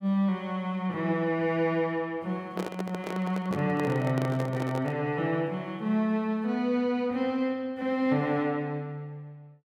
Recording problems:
handling noise; from 2.5 to 5 s; peak -1 dB vs average level

